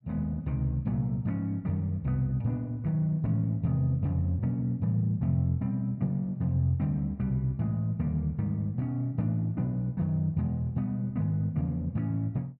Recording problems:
none

